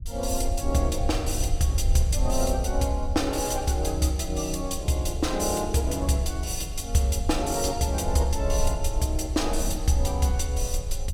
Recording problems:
rumble; below 64 Hz, SNR 6 dB

